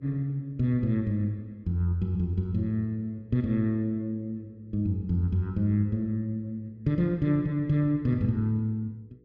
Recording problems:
hum; 60 Hz, harmonics up to 480 Hz, SNR 31 dB

